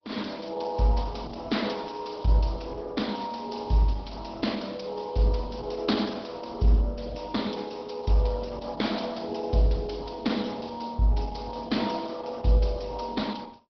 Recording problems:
low-pass filter; nothing above 5.5 kHz
codec artefacts; Opus, log-spectral distance 7 dB

